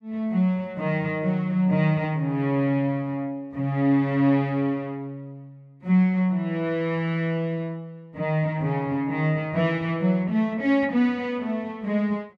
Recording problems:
none

